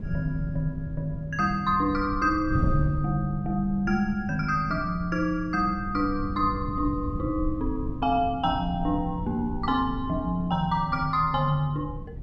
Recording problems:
wind noise; below 140 Hz, SNR 9 dB

